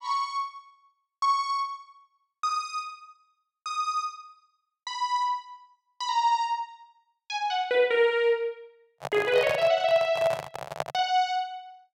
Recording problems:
handling noise; from 9 to 11 s; peak +1 dB vs average level

